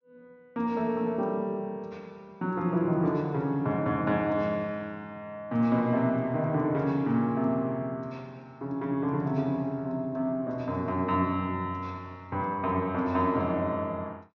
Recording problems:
treble cut off; nothing above 6.9 kHz

